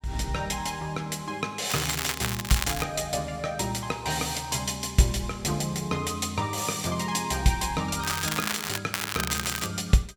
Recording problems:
crackle; from 1.5 to 3 s, at 8 s and at 9 s; loose cable, SNR 3 dB

